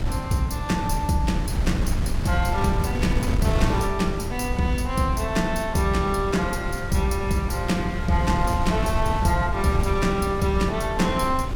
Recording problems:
wind noise; below 130 Hz, SNR 5 dB

